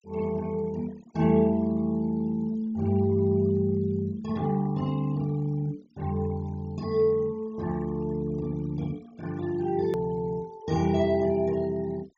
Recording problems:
low-pass filter; nothing above 7.5 kHz
noise reduction artefacts; signal-to-artefact ratio 24 dB
hard cut with a click; at 10 s

